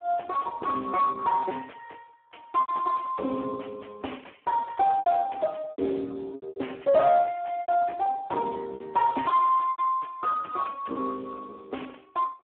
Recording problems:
telephone audio; 240 Hz to 2.1 kHz, Speex
distorted audio; soft clipping, signal-to-distortion ratio 8 dB
lost packets; 7% of the sound replaced, filled with repeated pitch periods

